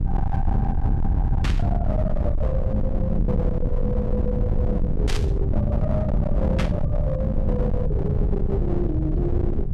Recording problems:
distortion; hard clipping, signal-to-distortion ratio 7 dB
low-frequency rumble; below 110 Hz, SNR -2 dB
burst of static; at 1.5 s, at 5 s and at 6.5 s; peak +1 dB vs average level

